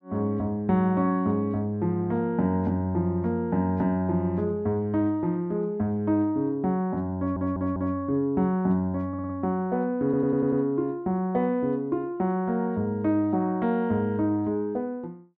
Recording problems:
audio stuttering; at 7 s, at 9 s and at 10 s

